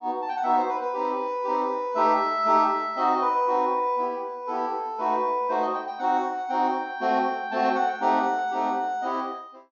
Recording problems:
treble missing; nothing above 6.7 kHz

